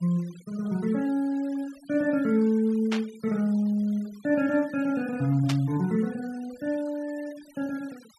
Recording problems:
denoising artefacts; signal-to-artefact ratio 24 dB
burst of static; at 3 s and at 5.5 s; peak -2 dB vs average level

